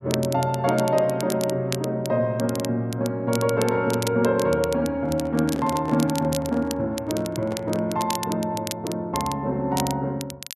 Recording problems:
crackling; vinyl, SNR 12 dB
handling noise; from 5 to 8 s; peak -7 dB vs average level

